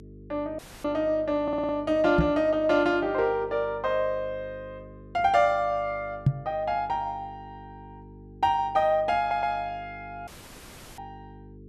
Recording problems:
hum; 50 Hz, harmonics up to 450 Hz, SNR 21 dB
audio cutting out; at 0.5 s and at 10 s for 0.5 s
stutter; at 1.5 s and at 9 s
microphone bump; at 2 s and at 6.5 s; peak +8 dB vs average level

